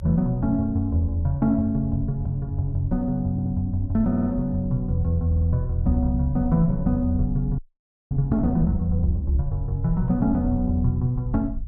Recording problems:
rumble; below 56 Hz, strongest tone 36 Hz, SNR 11 dB
audio stuttering; at 3.5 s, at 4 s and at 5.5 s
audio freezing; at 7.5 s for 0.5 s

